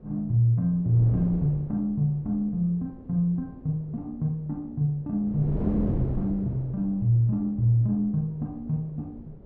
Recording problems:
wind on the microphone; below 300 Hz, SNR 11 dB

